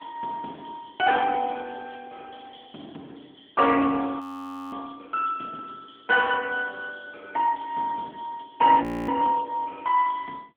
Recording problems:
phone line; 190 Hz to 3.3 kHz, AMR-NB
frozen audio; at 4 s for 0.5 s and at 9 s

